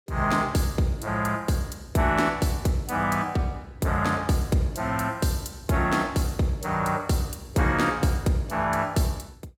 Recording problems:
none

